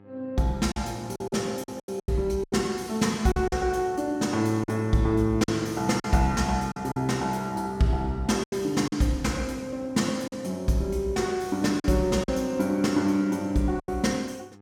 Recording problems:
hum; 50 Hz, harmonics up to 1.8 kHz, SNR 26 dB
lost packets; 7% of the sound replaced, filled with silence

